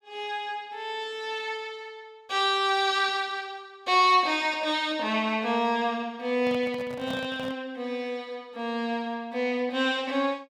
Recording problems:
microphone handling noise; from 6.5 to 7.5 s; peak -7 dB vs average level

